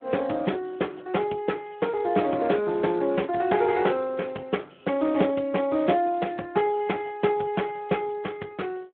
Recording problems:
telephone audio; 220 Hz to 3.5 kHz, Speex

